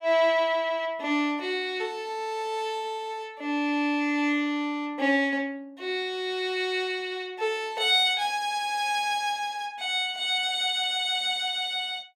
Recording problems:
none

